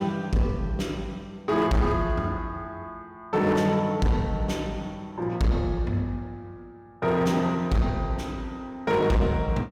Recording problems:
distortion; hard clipping, signal-to-distortion ratio 10 dB

